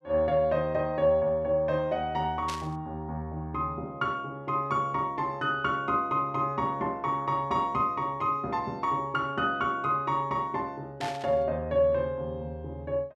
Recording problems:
burst of static; at 2.5 s and at 11 s; peak -4 dB vs average level

